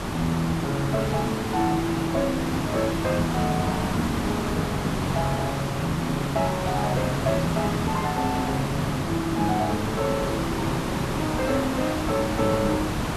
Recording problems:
background hiss; SNR 1 dB

